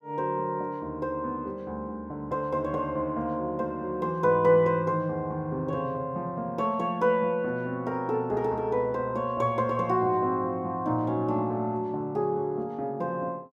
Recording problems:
none

